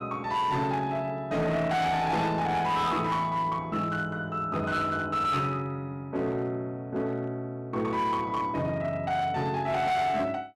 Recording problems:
distorted audio; hard clipping, signal-to-distortion ratio 10 dB

